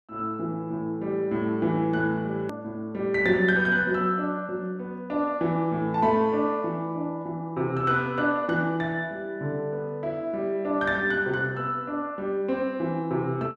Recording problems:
edit click; at 2.5 s

